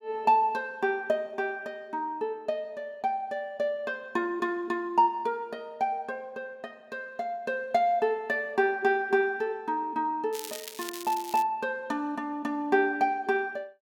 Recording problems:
crackling; from 10 to 11 s; loose cable, SNR 11 dB

